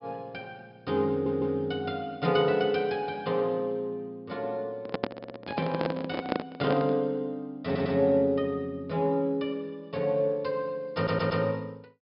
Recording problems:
treble cut off; nothing above 5.5 kHz
audio stuttering; 4 times, first at 1 s
handling noise; from 5 to 7 s; peak +3 dB vs average level

